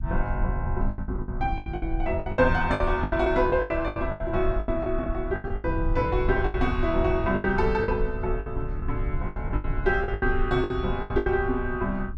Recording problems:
rumble; below 70 Hz, SNR 6 dB
lost packets; 17% of the sound replaced, filled with the last packet

